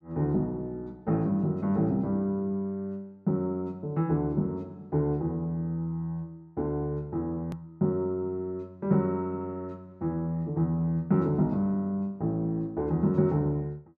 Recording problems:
hard cut with a click; at 7.5 s

